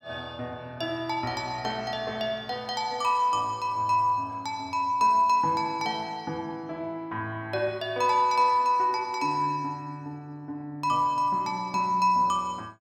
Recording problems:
none

